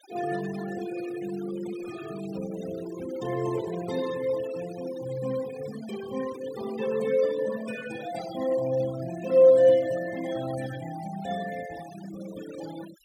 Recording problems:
denoising artefacts; signal-to-artefact ratio 15 dB

